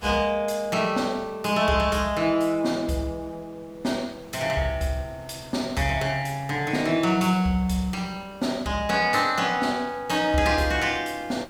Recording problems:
background hiss; slope -5 dB per octave, SNR 24 dB

